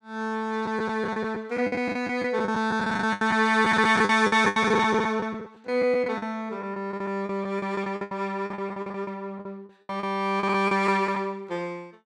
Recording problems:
lost packets; 16% of the sound replaced, filled with the last packet

